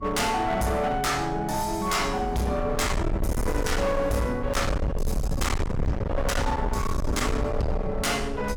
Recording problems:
distorted audio; hard clipping, signal-to-distortion ratio 6 dB
low-frequency rumble; below 150 Hz, SNR 4 dB

